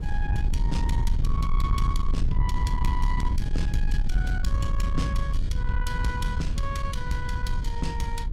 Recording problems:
distorted audio; soft clipping, signal-to-distortion ratio 11 dB
rumble; below 70 Hz, SNR -5 dB

